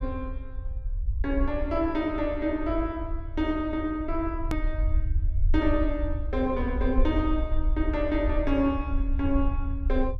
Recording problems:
rumble; below 62 Hz, SNR 3 dB
hard cut with a click; at 4.5 s

